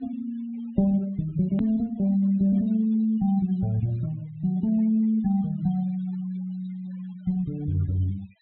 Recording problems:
treble missing; nothing above 4 kHz
noise reduction artefacts; signal-to-artefact ratio 22 dB
hard cut with a click; at 1.5 s

